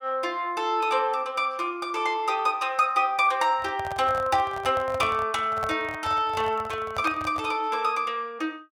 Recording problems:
microphone handling noise; from 3.5 to 7.5 s; peak -4 dB vs average level

